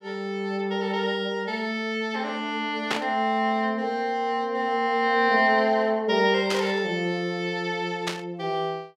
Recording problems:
burst of static; at 3 s, at 6.5 s and at 8 s; peak +2 dB vs average level

